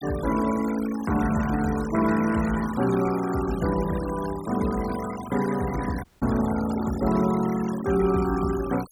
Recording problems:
noise reduction artefacts; signal-to-artefact ratio 14 dB
audio cutting out; at 6 s

